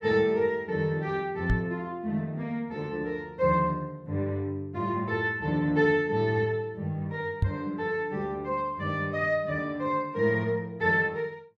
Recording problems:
microphone thump; at 1.5 s and at 7.5 s; peak +6 dB vs average level

